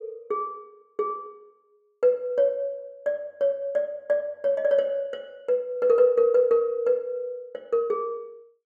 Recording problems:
none

